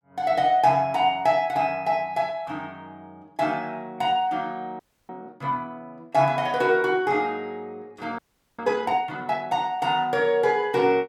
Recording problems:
audio freezing; at 5 s and at 8 s

